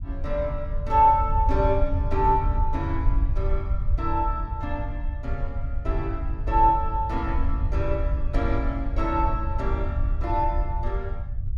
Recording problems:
rumble; below 74 Hz, SNR 2 dB

